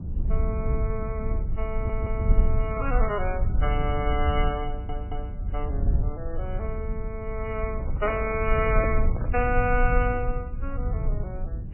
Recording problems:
lossy codec; MP3, then MP3, log-spectral distance 2 dB, nothing above 2.4 kHz
rumble; below 72 Hz, SNR -1 dB
audio stuttering; at 1.5 s and at 4.5 s
handling noise; from 7.5 to 9.5 s; peak 0 dB vs average level

